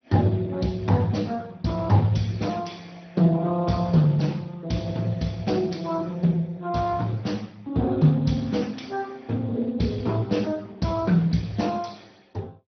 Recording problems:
treble cut off; nothing above 6 kHz
lossy codec; Speex, log-spectral distance 4 dB

